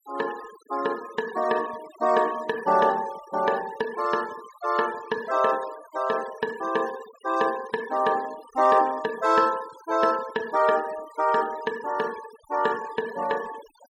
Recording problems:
denoising artefacts; signal-to-artefact ratio 19 dB

